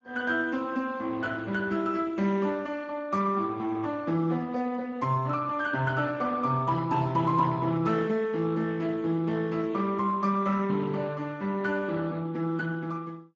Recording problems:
lossy codec; Speex, log-spectral distance 3 dB

